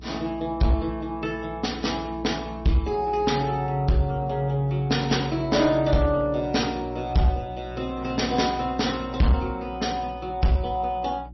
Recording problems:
codec artefacts; MP3, log-spectral distance 3 dB, nothing above 5.8 kHz
distortion; hard clipping, uneven, signal-to-distortion ratio 11 dB
hum; 60 Hz, harmonics up to 360 Hz, SNR 16 dB

